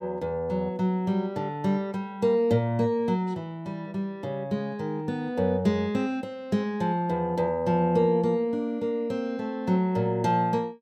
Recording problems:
none

